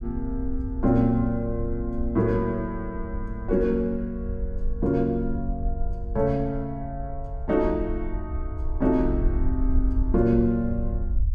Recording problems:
rumble; below 62 Hz, SNR 6 dB

